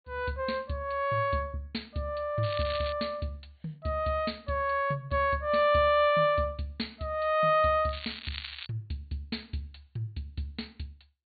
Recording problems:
low-pass filter; nothing above 4.5 kHz
crackling; at 2.5 s and at 8 s; loose cable, SNR 11 dB

